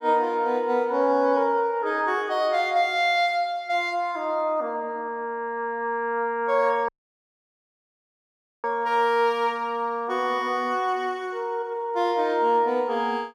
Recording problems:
audio cutting out; at 7 s for 2 s

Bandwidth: 16.5 kHz